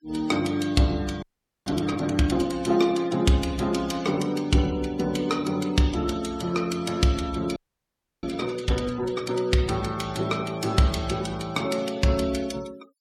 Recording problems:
noise reduction artefacts; signal-to-artefact ratio 19 dB
audio freezing; at 1 s and at 7.5 s for 0.5 s

